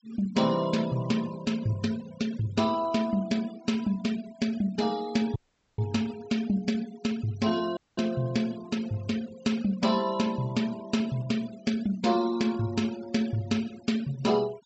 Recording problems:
treble missing; nothing above 7.8 kHz
noise reduction artefacts; signal-to-artefact ratio 18 dB
audio cutting out; at 5.5 s and at 8 s

